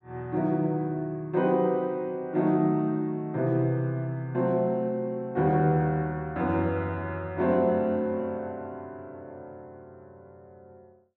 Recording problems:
none

